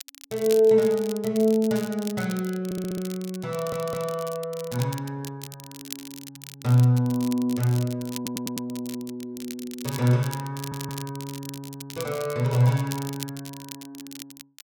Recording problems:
crackling; vinyl, SNR 14 dB
stutter; 4 times, first at 2.5 s

